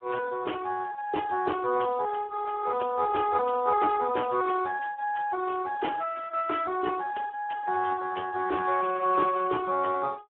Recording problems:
telephone audio; 300 Hz to 2 kHz, Speex

